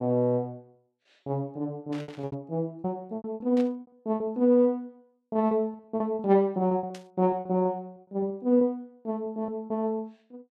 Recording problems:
lost packets; 13% of the sound replaced, filled with repeated pitch periods
static burst; at 2 s, at 3.5 s and at 7 s; peak -13 dB vs average level

